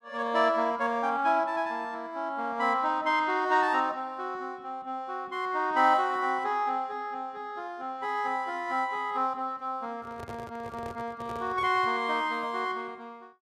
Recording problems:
handling noise; from 10 to 12 s; peak -10 dB vs average level

